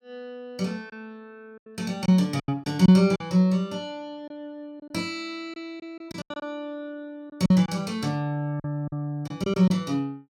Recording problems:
packet loss; 8% of the sound replaced, filled with silence

